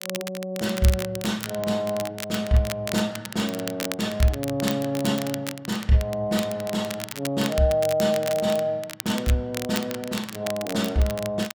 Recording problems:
crackle; vinyl, SNR 10 dB

